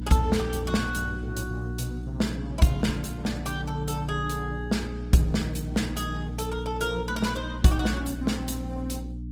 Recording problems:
lossy codec; Opus, log-spectral distance 3 dB
electrical hum; 60 Hz, harmonics up to 300 Hz, SNR 6 dB

